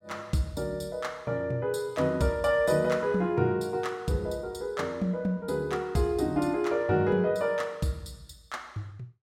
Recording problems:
none

